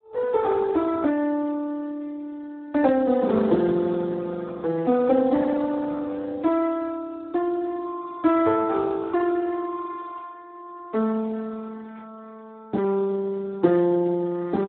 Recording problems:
telephone audio; 170 Hz to 2.3 kHz, Speex

